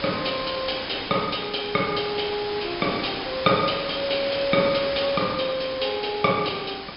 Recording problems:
treble missing; nothing above 5.5 kHz
hiss; slope -2 dB per octave, SNR 8 dB

